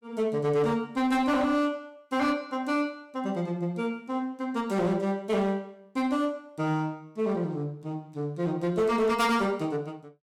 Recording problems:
distorted audio; hard clipping, signal-to-distortion ratio 11 dB

